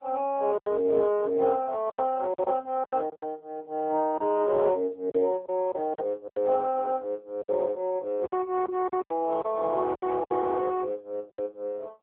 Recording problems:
phone line; 300 Hz to 3.3 kHz, AMR-NB
lost packets; 9% of the sound replaced, filled with silence

